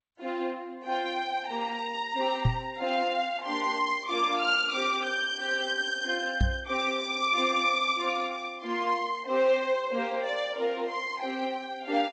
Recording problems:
lossy compression; Vorbis, then G.722, log-spectral distance 3 dB
knock on the microphone; at 2.5 s and at 6.5 s; peak +7 dB vs average level

